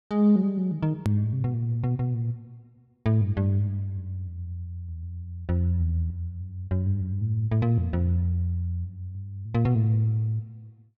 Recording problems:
hard cut with a click; at 1 s

